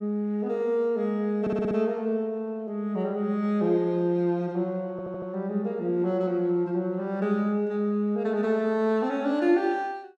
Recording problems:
audio stuttering; at 1.5 s and at 5 s

